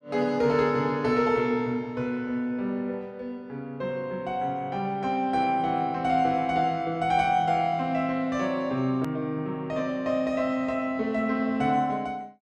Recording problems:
edit click; at 9 s

